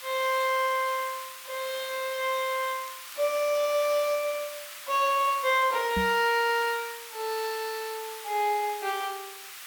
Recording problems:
hiss; SNR 12 dB
crackle; at 2.5 s and at 3 s; loose cable, SNR 27 dB
microphone bump; at 6 s; peak -1 dB vs average level

